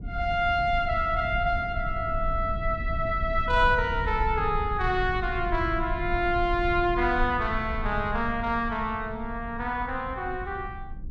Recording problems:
rumble; below 80 Hz, SNR 8 dB

